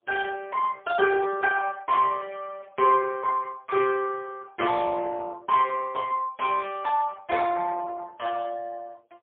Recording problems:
phone line; 240 Hz to 3.1 kHz, AMR-NB, then MP3

